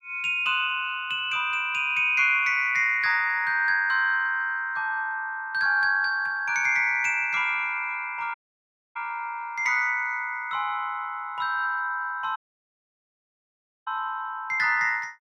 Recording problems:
dropout; at 8.5 s for 0.5 s and at 12 s for 1.5 s

